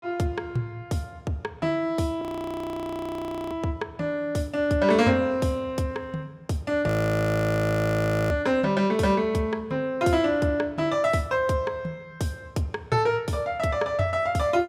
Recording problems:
frozen audio; at 2 s for 1.5 s and at 7 s for 1.5 s

